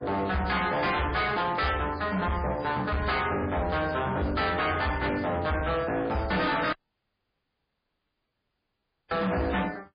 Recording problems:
codec artefacts; MP3, log-spectral distance 5 dB
distortion; hard clipping, signal-to-distortion ratio 7 dB
dropout; at 6.5 s for 2.5 s

